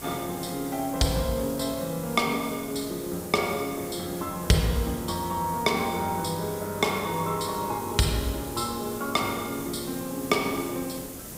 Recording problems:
hiss; SNR 10 dB

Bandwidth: 15.5 kHz